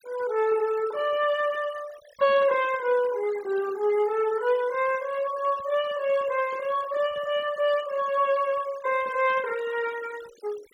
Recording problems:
noise reduction artefacts; signal-to-artefact ratio 19 dB

